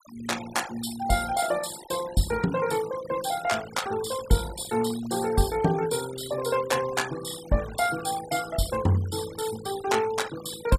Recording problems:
denoising artefacts; signal-to-artefact ratio 14 dB

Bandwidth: 15 kHz